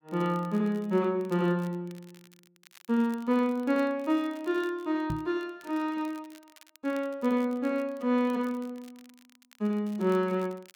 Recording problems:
crackle; vinyl, SNR 27 dB
knock on the microphone; at 5 s; peak -1 dB vs average level

